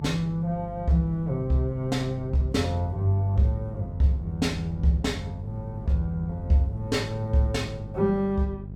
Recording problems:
mains hum; 50 Hz, harmonics up to 600 Hz, SNR 12 dB
wind noise; below 200 Hz, SNR 20 dB

